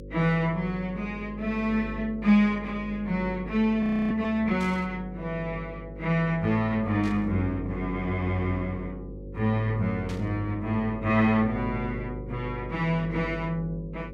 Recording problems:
hum; 50 Hz, harmonics up to 550 Hz, SNR 12 dB
frozen audio; at 4 s
burst of static; at 4.5 s, at 7 s and at 10 s; peak -12 dB vs average level

